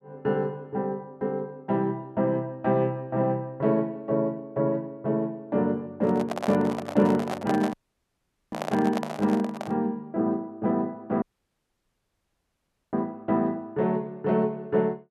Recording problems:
microphone handling noise; from 6 to 10 s; peak 0 dB vs average level
dropout; at 7.5 s for 1 s and at 11 s for 1.5 s

